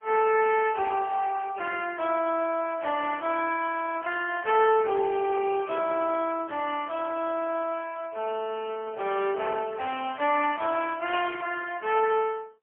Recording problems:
phone line; 300 Hz to 3.3 kHz, AMR-NB, then MP3

